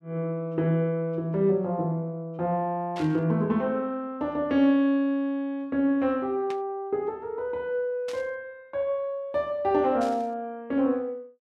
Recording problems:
static burst; 4 times, first at 3 s; peak -10 dB vs average level

